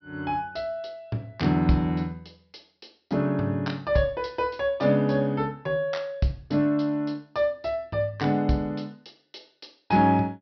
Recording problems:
low-pass filter; nothing above 5.6 kHz

